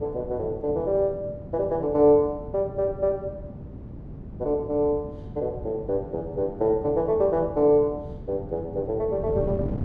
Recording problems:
wind on the microphone; below 240 Hz, SNR 13 dB

